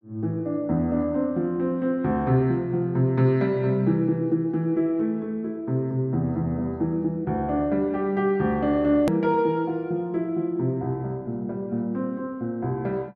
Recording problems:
hard cut with a click; at 9 s

